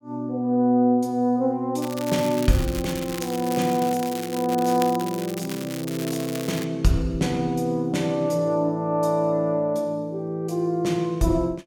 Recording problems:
crackle; from 2 to 6.5 s; loose cable, SNR 12 dB

